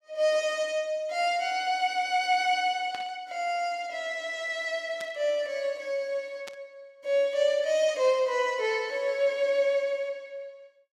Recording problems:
burst of static; at 3 s, at 5 s and at 6.5 s; peak -10 dB vs average level

